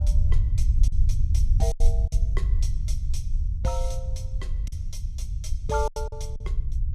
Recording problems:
rumble; below 70 Hz, SNR -8 dB
packet loss; 8% of the sound replaced, filled with silence

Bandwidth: 14.5 kHz